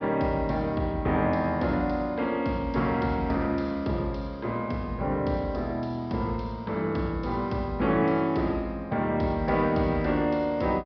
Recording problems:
low-pass filter; nothing above 5.5 kHz

